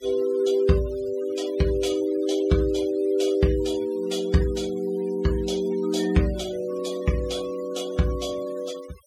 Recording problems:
noise reduction artefacts; signal-to-artefact ratio 19 dB

